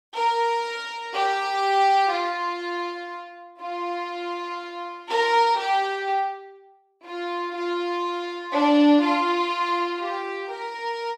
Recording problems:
none

